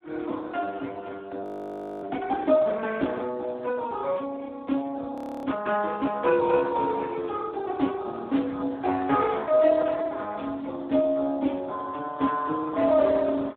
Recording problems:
telephone audio; 220 Hz to 3.7 kHz, Speex
frozen audio; at 1.5 s for 0.5 s and at 5 s

